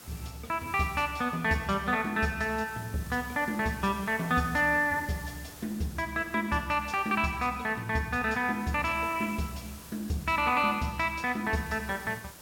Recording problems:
hiss; slope -3 dB per octave, SNR 19 dB

